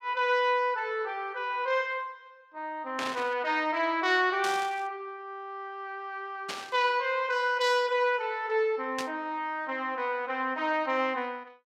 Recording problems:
static burst; 4 times, first at 3 s; peak -2 dB vs average level

